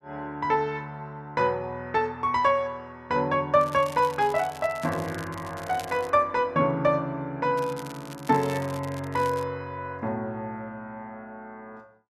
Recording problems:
crackle; from 3.5 to 6 s and from 7.5 to 9.5 s; loose cable, SNR 19 dB

